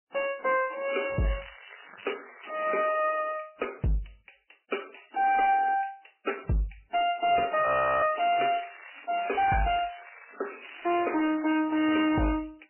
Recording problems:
codec artefacts; MP3, then MP3, log-spectral distance 13 dB, nothing above 2.5 kHz
distorted audio; hard clipping, signal-to-distortion ratio 10 dB
crackling; from 1.5 to 2.5 s and from 8 to 12 s; loose cable, SNR 18 dB
frozen audio; at 7.5 s

